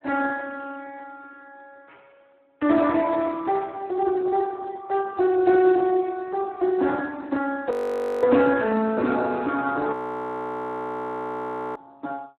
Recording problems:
phone line; 190 Hz to 2.4 kHz, Speex
audio freezing; at 7.5 s for 0.5 s and at 10 s for 2 s

